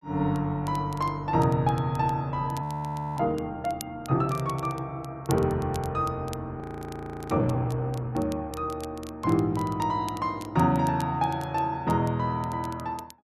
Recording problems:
crackle; vinyl, SNR 21 dB
frozen audio; at 2.5 s for 0.5 s and at 6.5 s for 0.5 s

